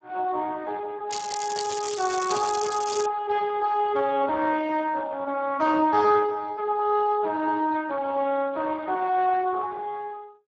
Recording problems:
codec artefacts; Speex, log-spectral distance 5 dB
crackle; from 1 to 3 s; loose cable, SNR 9 dB

